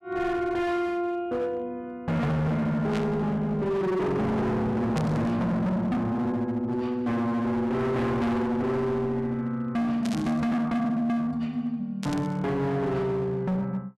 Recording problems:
distorted audio; hard clipping, signal-to-distortion ratio 6 dB
static burst; 4 times, first at 3 s; peak -6 dB vs average level

